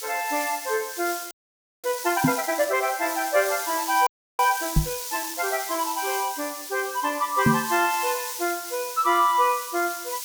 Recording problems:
background hiss; slope +5 dB per octave, SNR 7 dB
audio freezing; at 1.5 s for 0.5 s and at 4 s
knock on the microphone; at 2 s, at 5 s and at 7.5 s; peak +8 dB vs average level

